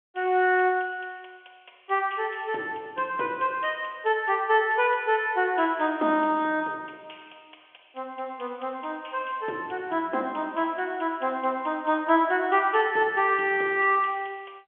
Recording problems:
telephone audio; 280 Hz to 3.4 kHz, G.711

